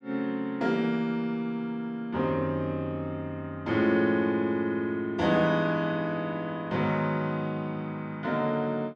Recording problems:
none

